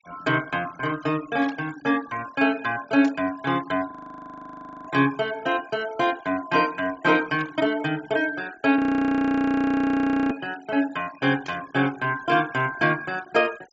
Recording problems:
low-pass filter; nothing above 8 kHz
denoising artefacts; signal-to-artefact ratio 21 dB
burst of static; 4 times, first at 1.5 s; peak -13 dB vs average level
audio freezing; at 4 s for 1 s and at 9 s for 1.5 s

